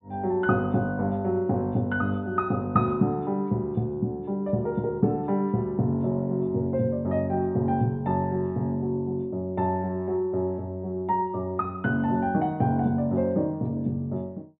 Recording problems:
treble cut off; nothing above 4 kHz

